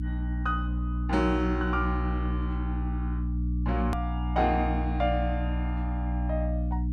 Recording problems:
hum; 60 Hz, harmonics up to 300 Hz, SNR -1 dB
hard cut with a click; at 4 s

